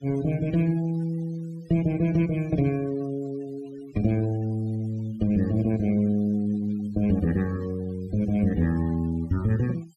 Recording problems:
noise reduction artefacts; signal-to-artefact ratio 24 dB

